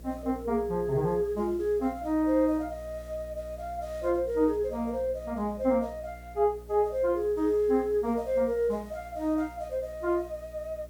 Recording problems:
hum; 60 Hz, harmonics up to 660 Hz, SNR 19 dB
hiss; slope -2 dB per octave, SNR 30 dB

